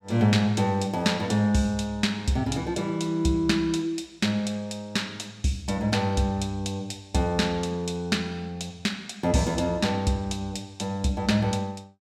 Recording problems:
none

